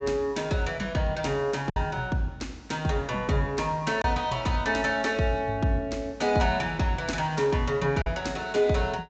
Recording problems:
treble cut off; nothing above 8 kHz
packet loss; 1.3% of the sound replaced, filled with silence

